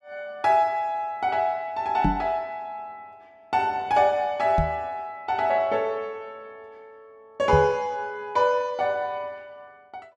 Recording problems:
microphone bump; at 2 s, at 4.5 s and at 7.5 s; peak +4 dB vs average level

